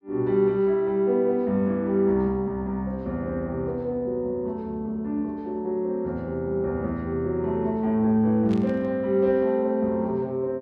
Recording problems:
burst of static; at 8.5 s; peak -14 dB vs average level

